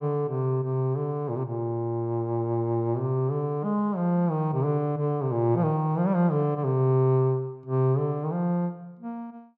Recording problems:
none

